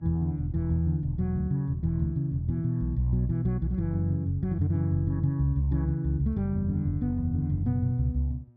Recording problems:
electrical hum; 60 Hz, harmonics up to 960 Hz, SNR 30 dB

